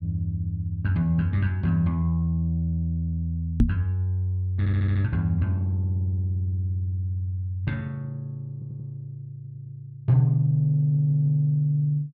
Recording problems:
microphone thump; at 3.5 s; peak +9 dB vs average level
audio stuttering; 4 times, first at 4.5 s

